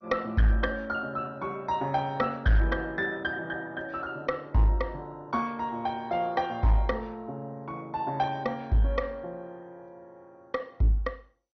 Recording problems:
lossy codec; MP2, log-spectral distance 2 dB, nothing above 6 kHz
distortion; hard clipping, uneven, signal-to-distortion ratio 11 dB

